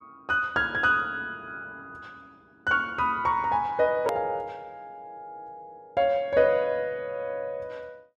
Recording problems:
hard cut with a click; at 4 s

